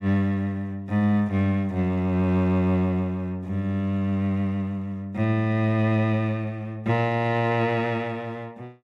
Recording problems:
none

